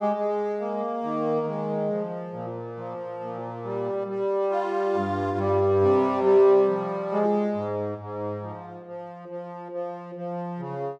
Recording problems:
none

